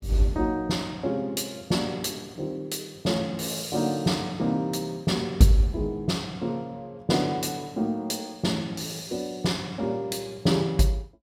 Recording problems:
none

